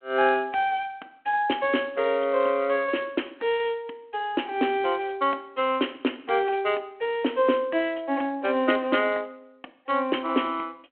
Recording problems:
telephone audio; 240 Hz to 3.3 kHz, G.726

